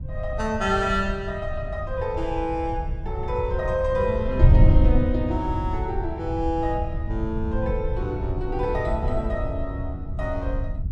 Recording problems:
wind noise; below 100 Hz, SNR 0 dB

